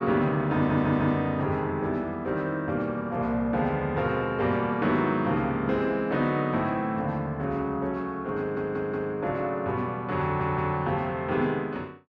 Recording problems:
audio stuttering; at 0.5 s, at 8.5 s and at 10 s

